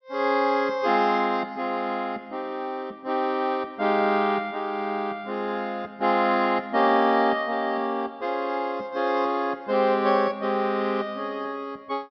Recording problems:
treble missing; nothing above 5.5 kHz

